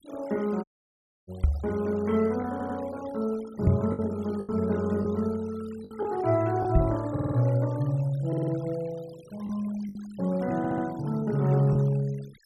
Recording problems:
denoising artefacts; signal-to-artefact ratio 22 dB
packet loss; 4% of the sound replaced, filled with the last packet
dropout; at 0.5 s for 0.5 s
microphone thump; at 1.5 s, at 3.5 s and at 7 s; peak +8 dB vs average level
stutter; 4 times, first at 2.5 s

